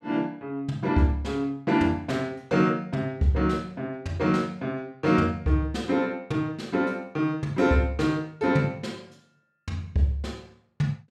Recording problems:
none

